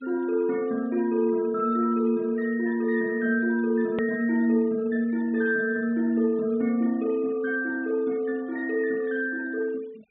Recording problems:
low-pass filter; nothing above 4 kHz
noise reduction artefacts; signal-to-artefact ratio 25 dB
click at an edit; at 4 s

